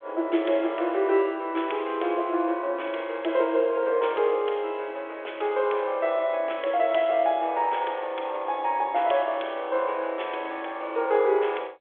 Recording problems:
phone line; 300 Hz to 3.5 kHz, G.726

